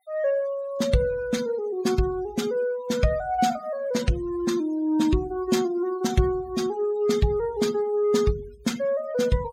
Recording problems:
denoising artefacts; signal-to-artefact ratio 17 dB

